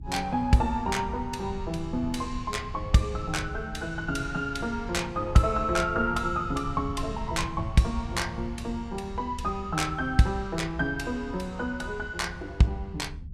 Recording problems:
low-frequency rumble; below 130 Hz, SNR 11 dB

